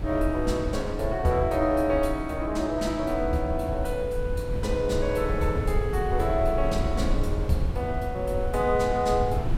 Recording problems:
wind on the microphone; below 100 Hz, SNR 5 dB

